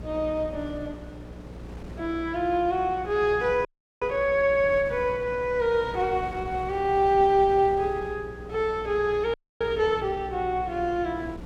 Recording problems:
mains hum; 60 Hz, harmonics up to 540 Hz, SNR 17 dB
wind on the microphone; below 570 Hz, SNR 19 dB
audio freezing; at 3.5 s and at 9.5 s

